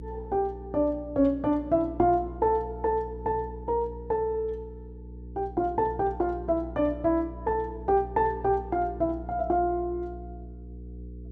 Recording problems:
electrical hum; 60 Hz, harmonics up to 480 Hz, SNR 14 dB

